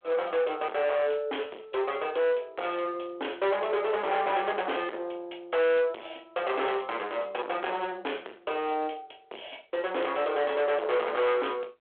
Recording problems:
phone line; 320 Hz to 3.5 kHz, G.726
distortion; soft clipping, signal-to-distortion ratio 7 dB

